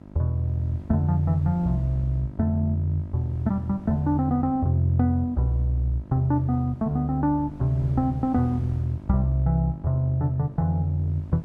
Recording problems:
electrical hum; 50 Hz, harmonics up to 1.3 kHz, SNR 19 dB
wind noise; below 200 Hz, SNR 23 dB

